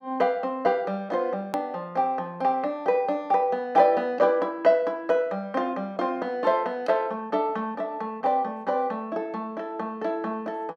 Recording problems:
click at an edit; at 1.5 s

